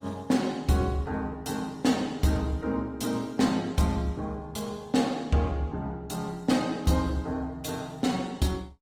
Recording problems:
lossy codec; Opus, log-spectral distance 3 dB

